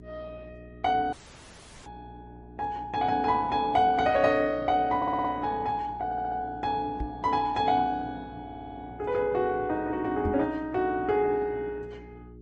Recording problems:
lossy compression; Opus, then MP3, log-spectral distance 3 dB
hum; 60 Hz, harmonics up to 420 Hz, SNR 21 dB
audio cutting out; at 1 s for 0.5 s
knock on the microphone; at 2 s, at 7 s and at 10 s; peak -1 dB vs average level
stutter; at 5 s, at 6 s and at 8.5 s

